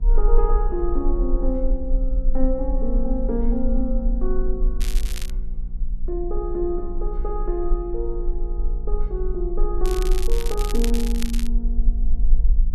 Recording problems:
hum; 60 Hz, harmonics up to 540 Hz, SNR 14 dB
rumble; below 38 Hz, strongest tone 18 Hz, SNR -2 dB
crackling; at 5 s and from 10 to 11 s; loose cable, SNR 8 dB

